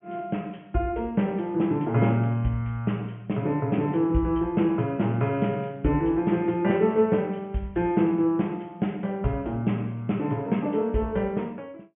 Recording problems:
treble cut off; nothing above 3.1 kHz

